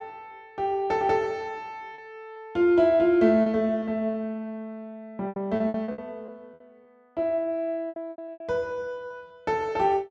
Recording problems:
lost packets; 8% of the sound replaced, filled with repeated pitch periods

